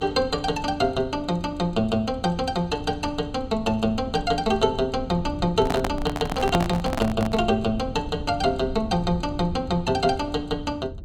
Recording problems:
low-frequency rumble; below 130 Hz, SNR 12 dB
handling noise; from 5.5 to 7.5 s; peak +3 dB vs average level

